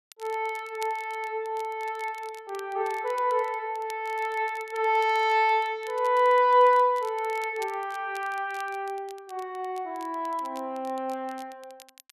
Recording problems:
crackling; vinyl, SNR 24 dB

